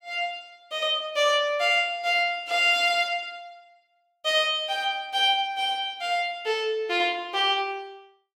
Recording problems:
none

